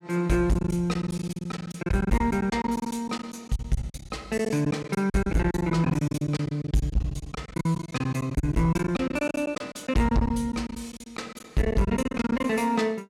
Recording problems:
distortion; soft clipping, signal-to-distortion ratio 11 dB
packet loss; 18% of the sound replaced, filled with silence

